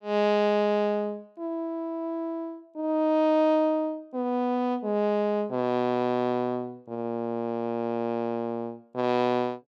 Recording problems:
none

